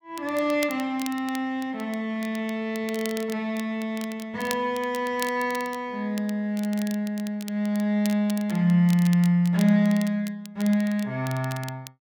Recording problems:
crackling; vinyl, SNR 17 dB

